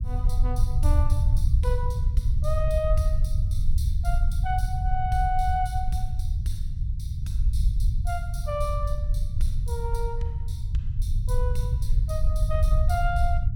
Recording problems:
low-frequency rumble; below 76 Hz, SNR -6 dB

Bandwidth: 17 kHz